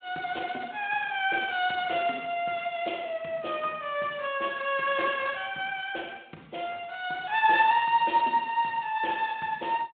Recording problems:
telephone audio; 240 Hz to 3.7 kHz, Speex

